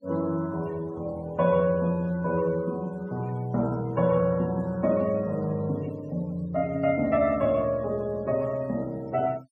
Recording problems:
denoising artefacts; signal-to-artefact ratio 25 dB

